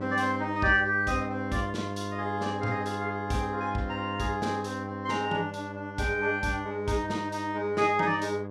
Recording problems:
hum; 50 Hz, harmonics up to 1.6 kHz, SNR 8 dB

